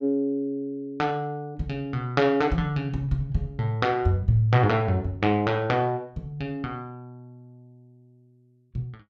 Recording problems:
none

